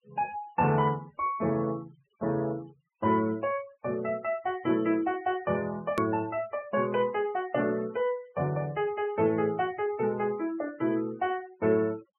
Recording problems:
low-pass filter; nothing above 3.1 kHz
noise reduction artefacts; signal-to-artefact ratio 22 dB
click at an edit; at 6 s

